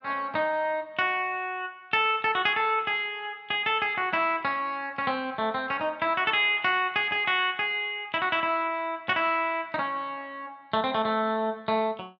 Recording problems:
none

